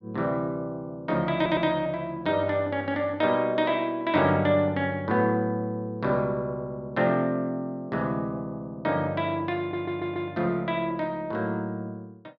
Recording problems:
audio stuttering; at 1.5 s and at 9.5 s

